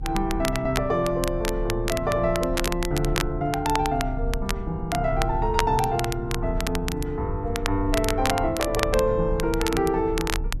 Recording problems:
rumble; below 72 Hz, strongest tone 34 Hz, SNR 8 dB
crackle; vinyl, SNR 7 dB

